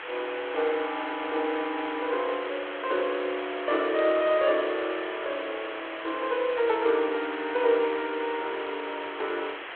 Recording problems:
telephone audio; 300 Hz to 3.6 kHz, G.726
background hiss; SNR 9 dB

